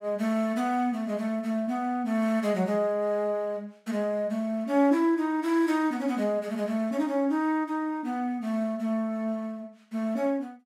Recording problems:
none

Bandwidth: 16 kHz